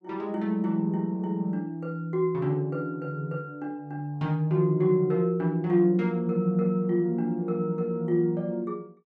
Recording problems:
none

